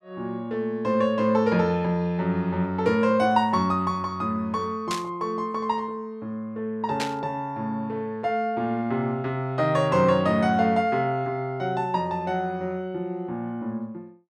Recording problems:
burst of static; at 5 s and at 7 s; peak 0 dB vs average level

